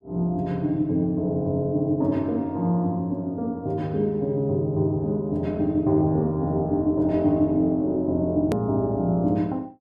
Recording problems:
click at an edit; at 8.5 s

